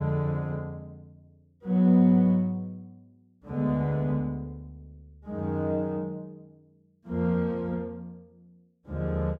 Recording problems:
none

